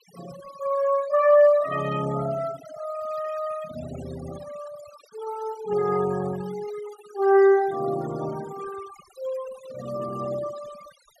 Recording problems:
noise reduction artefacts; signal-to-artefact ratio 17 dB

